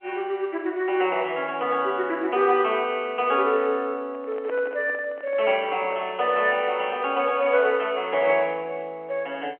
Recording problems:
telephone audio; 280 Hz to 3.1 kHz, G.711
handling noise; from 4 to 6.5 s; peak -8 dB vs average level

